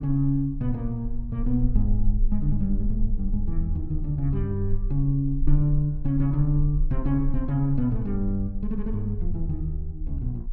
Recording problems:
low-frequency rumble; below 38 Hz, strongest tone 22 Hz, SNR 6 dB

